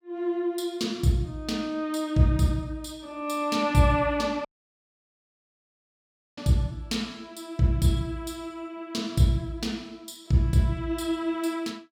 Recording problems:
audio cutting out; at 4.5 s for 2 s

